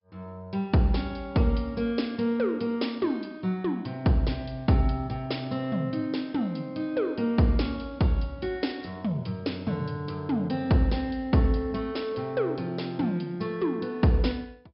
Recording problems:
treble cut off; nothing above 5.3 kHz
lossy codec; MP2, log-spectral distance 2 dB

